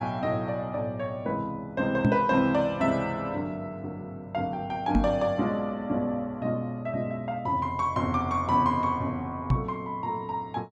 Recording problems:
microphone thump; at 2 s, at 5 s and at 9.5 s; peak +8 dB vs average level

